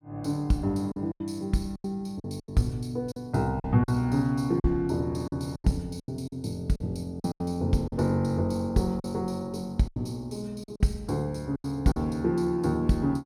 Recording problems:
packet loss; 9% of the sound replaced, filled with silence

